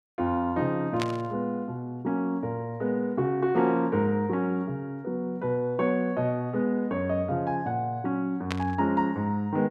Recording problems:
static burst; at 1 s and at 8.5 s; peak 0 dB vs average level

